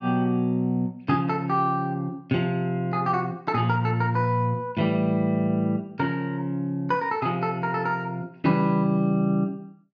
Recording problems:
low-pass filter; nothing above 8 kHz

